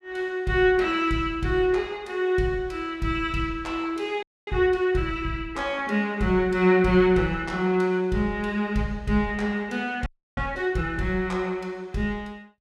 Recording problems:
frozen audio; at 4 s and at 10 s

